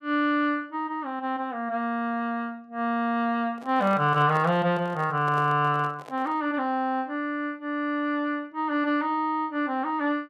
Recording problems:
handling noise; from 3.5 to 6.5 s; peak -8 dB vs average level

